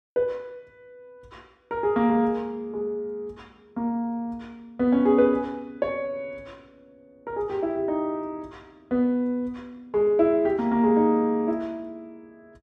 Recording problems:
none

